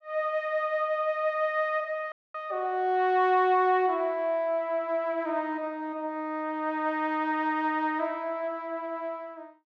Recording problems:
audio cutting out; at 2 s

